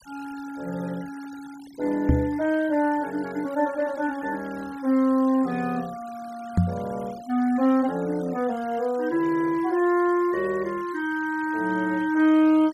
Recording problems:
denoising artefacts; signal-to-artefact ratio 23 dB
microphone thump; at 2 s and at 6.5 s; peak +7 dB vs average level

